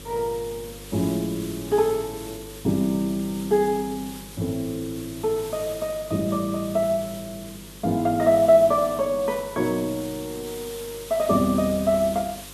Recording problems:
mains hum; 50 Hz, harmonics up to 550 Hz, SNR 22 dB
background hiss; SNR 16 dB

